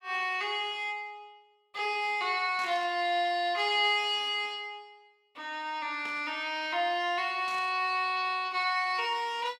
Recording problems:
burst of static; at 2.5 s, at 6 s and at 7.5 s; peak -11 dB vs average level

